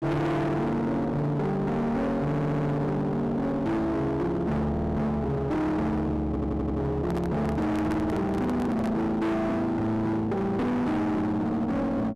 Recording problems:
distortion; hard clipping, uneven, signal-to-distortion ratio 5 dB
audio stuttering; at 2.5 s, at 4.5 s and at 6.5 s
handling noise; from 7 to 9 s; peak -2 dB vs average level

